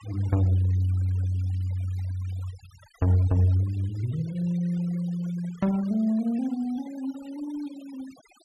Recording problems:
noise reduction artefacts; signal-to-artefact ratio 23 dB

